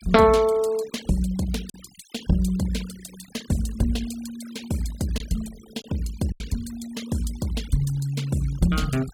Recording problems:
denoising artefacts; signal-to-artefact ratio 18 dB
lost packets; 1.9% of the sound replaced, filled with silence

